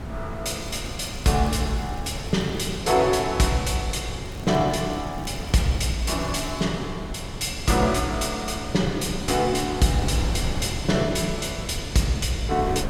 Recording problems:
wind noise; below 300 Hz, SNR 9 dB
crackling; from 0.5 to 3 s and from 4.5 to 6.5 s; loose cable, SNR 27 dB

